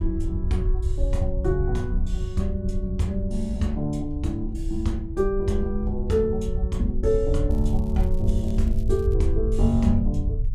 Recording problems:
rumble; below 74 Hz, SNR 1 dB
crackle; from 7.5 to 9 s; loose cable, SNR 28 dB

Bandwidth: 14.5 kHz